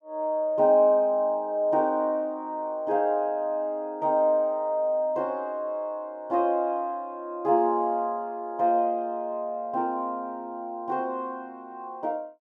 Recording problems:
none

